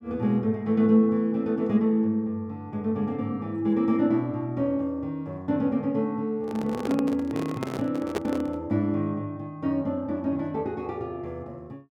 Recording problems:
microphone handling noise; from 6.5 to 8.5 s; peak +1 dB vs average level

